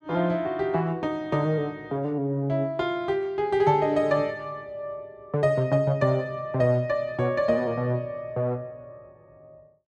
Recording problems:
none

